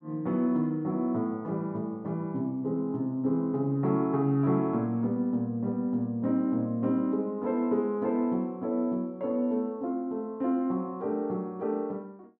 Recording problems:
none

